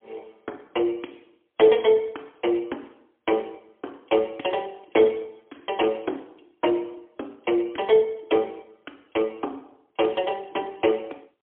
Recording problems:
phone line; 240 Hz to 3.5 kHz, AMR-NB, then MP3

